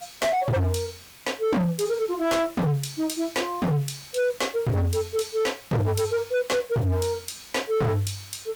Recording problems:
distorted audio; hard clipping, signal-to-distortion ratio 6 dB
hiss; slope -1 dB per octave, SNR 21 dB

